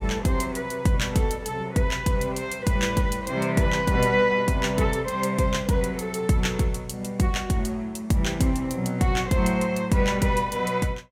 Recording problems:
none

